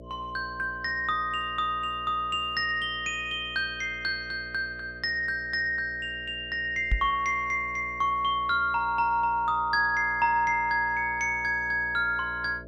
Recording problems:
hum; 60 Hz, harmonics up to 660 Hz, SNR 19 dB
microphone thump; at 7 s; peak +4 dB vs average level

